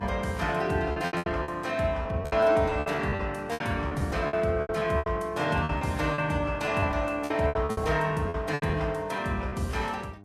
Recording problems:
lossy compression; Vorbis, log-spectral distance 2 dB, nothing above 13.5 kHz
electrical hum; 50 Hz, harmonics up to 1.2 kHz, SNR 22 dB
lost packets; 14% of the sound replaced, filled with repeated pitch periods

